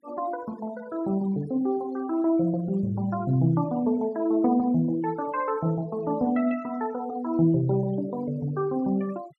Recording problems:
noise reduction artefacts; signal-to-artefact ratio 25 dB

